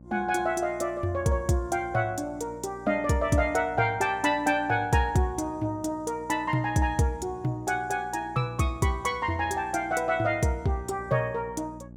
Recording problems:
hum; 60 Hz, harmonics up to 840 Hz, SNR 20 dB

